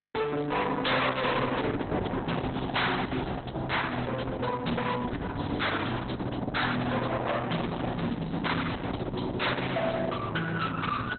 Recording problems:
lossy compression; Opus, log-spectral distance 7 dB, nothing above 4.1 kHz
distortion; hard clipping, signal-to-distortion ratio 6 dB

